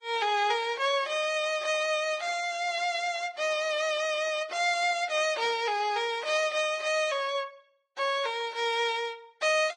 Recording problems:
codec artefacts; AAC, then Vorbis, log-spectral distance 3 dB
burst of static; at 5.5 s; peak -16 dB vs average level

